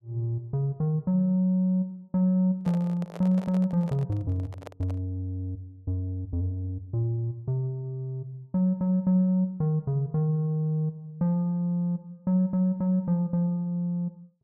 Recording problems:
handling noise; from 2.5 to 5 s; peak -9 dB vs average level

